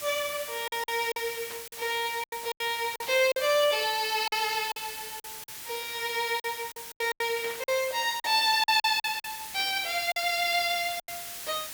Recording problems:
background hiss; slope +1 dB per octave, SNR 10 dB
lost packets; 10% of the sound replaced, filled with silence
burst of static; 4 times, first at 1.5 s; peak -11 dB vs average level

